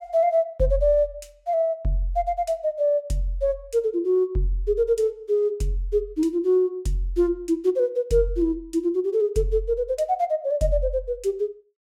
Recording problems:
none

